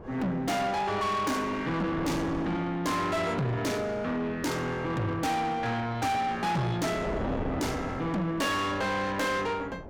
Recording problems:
distortion; soft clipping, signal-to-distortion ratio 8 dB
wind on the microphone; below 690 Hz, SNR 10 dB

